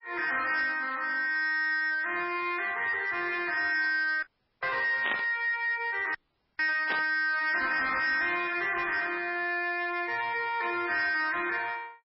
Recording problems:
lossy compression; MP3, log-spectral distance 3 dB, nothing above 5 kHz
distortion; soft clipping, signal-to-distortion ratio 11 dB
audio cutting out; at 4 s and at 6 s
static burst; at 5 s and at 7 s; peak -1 dB vs average level

